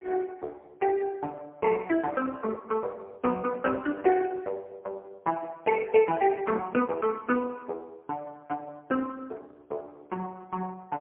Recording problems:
phone line; 300 Hz to 2.6 kHz, AMR-NB, then MP3

